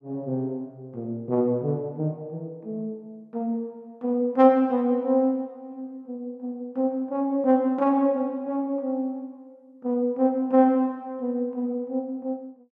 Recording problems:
none

